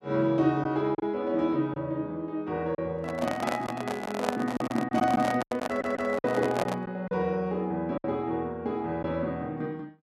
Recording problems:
lost packets; 5% of the sound replaced, filled with silence
handling noise; from 3 to 7 s; peak +4 dB vs average level
audio stuttering; at 5.5 s

